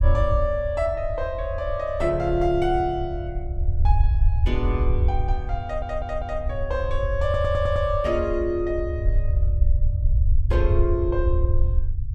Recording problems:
low-frequency rumble; below 80 Hz, SNR 0 dB
stutter; at 5.5 s and at 7 s

